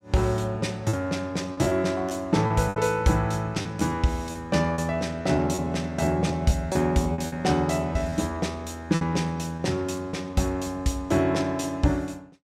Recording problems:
packet loss; 7% of the sound replaced, filled with repeated pitch periods

